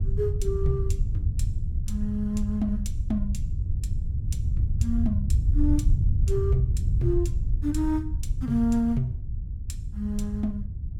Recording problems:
rumble; below 92 Hz, SNR -1 dB

